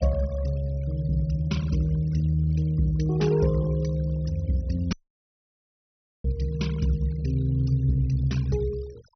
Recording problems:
treble cut off; nothing above 6 kHz
noise reduction artefacts; signal-to-artefact ratio 20 dB
audio cutting out; at 5 s for 1.5 s

